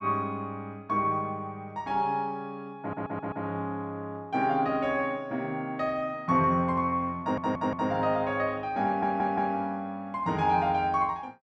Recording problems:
audio stuttering; at 3 s, at 7 s and at 9 s

